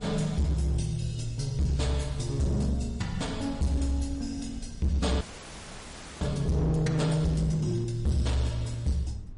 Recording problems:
lossy compression; MP3, log-spectral distance 3 dB, nothing above 10.4 kHz
distorted audio; hard clipping, signal-to-distortion ratio 10 dB
rumble; below 110 Hz, SNR 15 dB
wind on the microphone; below 440 Hz, SNR 26 dB
audio freezing; at 5 s for 1 s

